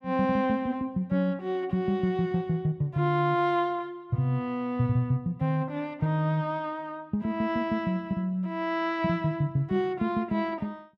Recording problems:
none

